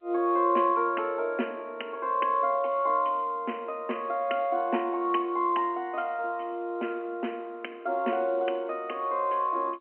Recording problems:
phone line; 240 Hz to 3.1 kHz, G.711

